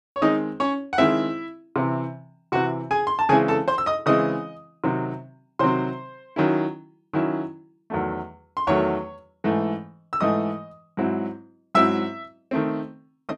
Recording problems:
none

